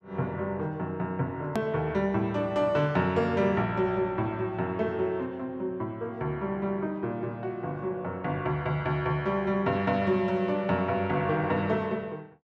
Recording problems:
hard cut with a click; at 1.5 s

